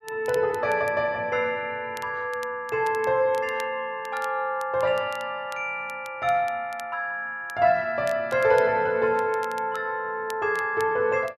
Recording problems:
crackle; vinyl, SNR 23 dB

